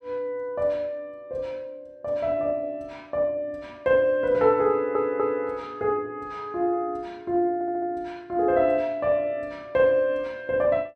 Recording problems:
stutter; at 4.5 s and at 7.5 s

